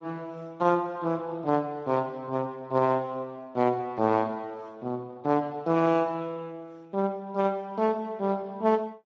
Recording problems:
lossy compression; Speex, log-spectral distance 2 dB

